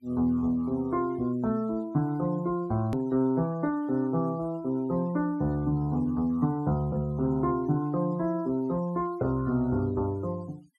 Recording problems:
noise reduction artefacts; signal-to-artefact ratio 27 dB
edit click; at 3 s

